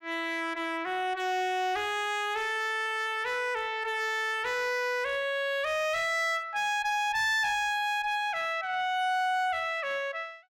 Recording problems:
distorted audio; hard clipping, uneven, signal-to-distortion ratio 10 dB

